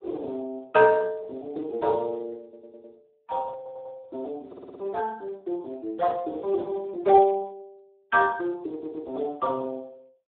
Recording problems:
phone line; 300 Hz to 2.1 kHz, Speex
audio stuttering; 4 times, first at 2.5 s

